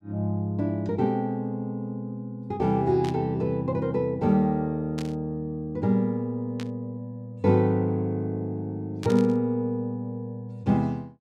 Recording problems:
static burst; 4 times, first at 3 s; peak -8 dB vs average level

